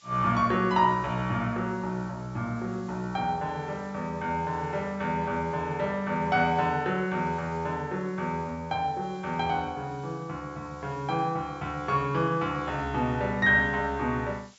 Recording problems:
treble missing; nothing above 8 kHz
background hiss; slope +3 dB per octave, SNR 29 dB

